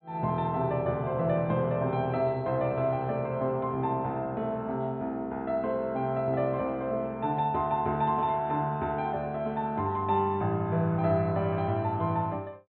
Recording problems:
treble missing; nothing above 4.1 kHz

